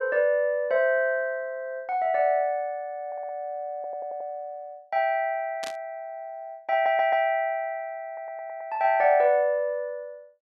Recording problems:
stutter; 4 times, first at 3 s
burst of static; at 5.5 s; peak -6 dB vs average level

